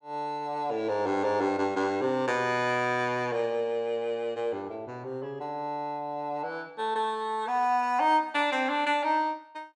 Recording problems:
none

